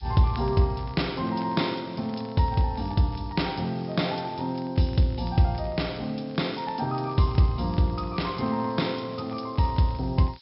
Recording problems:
low-pass filter; nothing above 5.4 kHz
background hiss; SNR 27 dB
crackle; vinyl, SNR 27 dB

